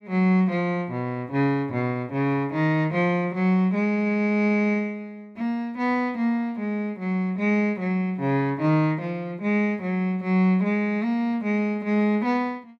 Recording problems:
none

